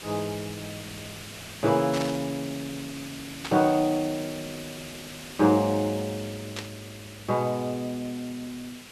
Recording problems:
hiss; SNR 13 dB
static burst; at 2 s, at 3.5 s and at 6.5 s; peak -3 dB vs average level

